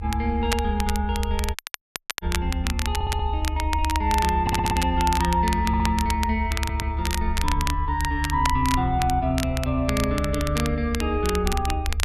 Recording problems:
low-frequency rumble; below 76 Hz, strongest tone 74 Hz, SNR 3 dB
crackle; vinyl, SNR 7 dB
audio cutting out; at 1.5 s for 0.5 s
stutter; 4 times, first at 3 s

